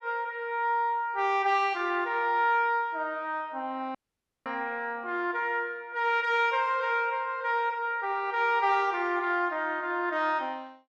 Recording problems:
audio cutting out; at 4 s for 0.5 s

